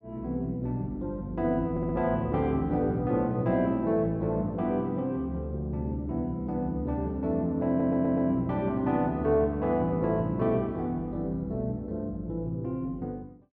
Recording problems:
audio stuttering; at 1.5 s and at 7.5 s

